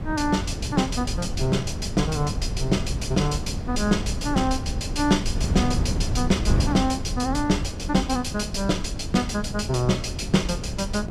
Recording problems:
wind on the microphone; below 150 Hz, SNR 5 dB

